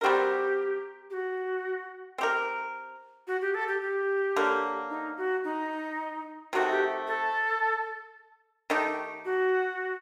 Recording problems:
none

